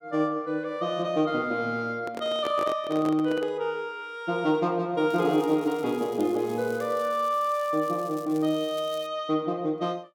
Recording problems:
microphone handling noise; from 2 to 3.5 s; peak -3 dB vs average level
crackle; from 5 to 9 s; loose cable, SNR 22 dB

